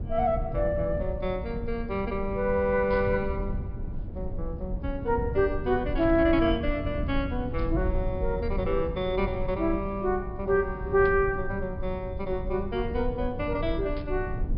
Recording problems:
treble cut off; nothing above 5.5 kHz
low-frequency rumble; below 110 Hz, SNR 7 dB
static burst; 5 times, first at 3 s; peak -14 dB vs average level

